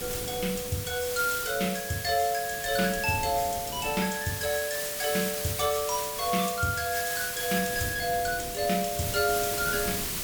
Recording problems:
background hiss; slope +1 dB per octave, SNR 3 dB
wind on the microphone; below 380 Hz, SNR 16 dB

